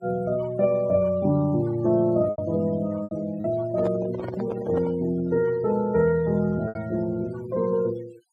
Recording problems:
noise reduction artefacts; signal-to-artefact ratio 21 dB
packet loss; 3% of the sound replaced, filled with repeated pitch periods
handling noise; from 3.5 to 5 s; peak -4 dB vs average level

